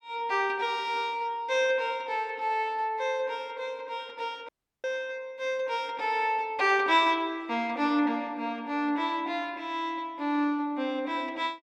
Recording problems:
dropout; at 4.5 s

